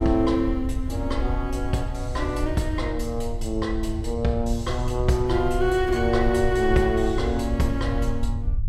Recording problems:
rumble; below 72 Hz, SNR 6 dB

